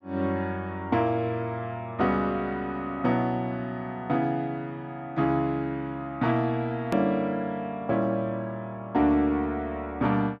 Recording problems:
edit click; at 7 s

